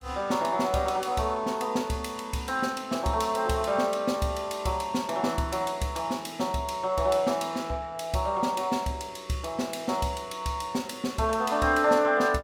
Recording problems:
none

